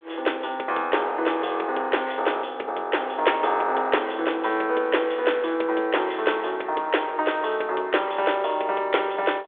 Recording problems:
phone line; 340 Hz to 3.6 kHz, G.726

